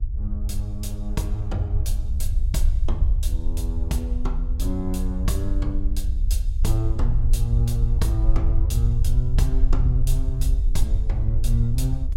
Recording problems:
hum; 60 Hz, harmonics up to 780 Hz, SNR 26 dB
low-frequency rumble; below 58 Hz, SNR -4 dB

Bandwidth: 16.5 kHz